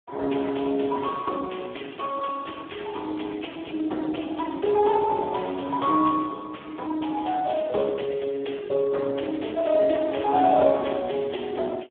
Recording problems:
telephone audio; 240 Hz to 2 kHz, Speex

